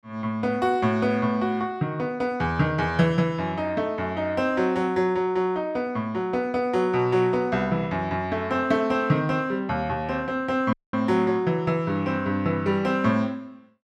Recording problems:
dropout; at 11 s

